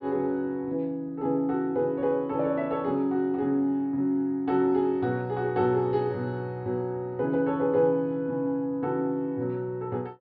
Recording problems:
treble cut off; nothing above 5.5 kHz

